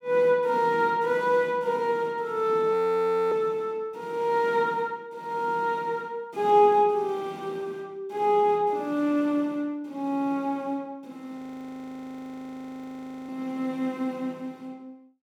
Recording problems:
frozen audio; at 2.5 s for 0.5 s and at 11 s for 2 s

